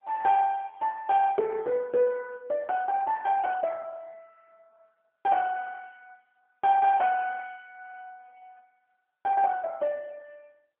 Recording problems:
phone line; 340 Hz to 3 kHz, AMR-NB

